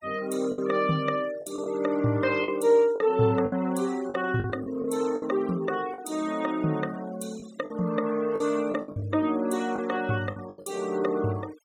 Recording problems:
denoising artefacts; signal-to-artefact ratio 20 dB
lost packets; 8% of the sound replaced, filled with the last packet

